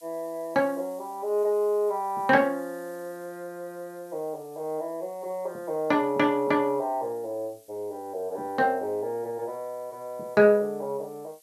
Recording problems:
hiss; slope +4 dB per octave, SNR 27 dB

